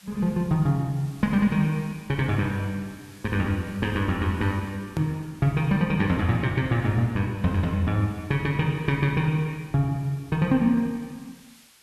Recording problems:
background hiss; slope +2 dB per octave, SNR 27 dB
hard cut with a click; at 5 s

